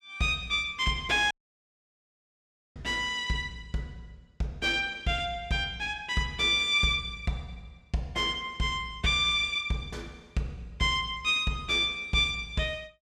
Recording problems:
audio cutting out; at 1.5 s for 1.5 s

